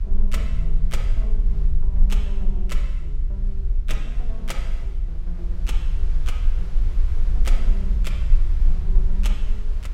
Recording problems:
rumble; below 40 Hz, strongest tone 20 Hz, SNR -12 dB
wind noise; below 2.2 kHz, SNR 13 dB

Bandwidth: 16.5 kHz